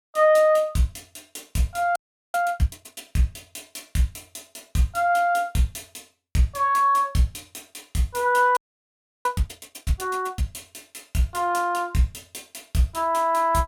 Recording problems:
frozen audio; at 2 s and at 8.5 s for 0.5 s

